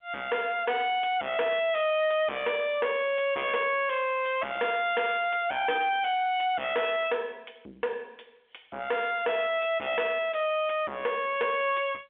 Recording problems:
phone line; 280 Hz to 3.5 kHz, G.711
distorted audio; soft clipping, signal-to-distortion ratio 7 dB

